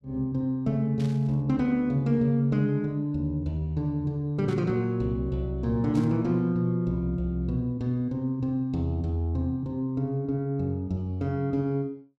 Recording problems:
burst of static; at 1 s, at 4.5 s and at 6 s; peak -14 dB vs average level

